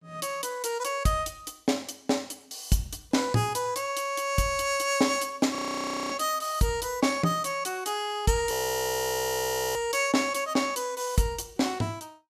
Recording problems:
audio freezing; at 5.5 s for 0.5 s and at 8.5 s for 1 s

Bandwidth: 14.5 kHz